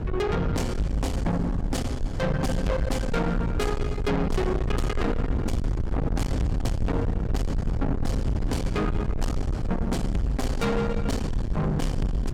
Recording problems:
distortion; soft clipping, signal-to-distortion ratio 6 dB
low-frequency rumble; below 190 Hz, SNR 1 dB

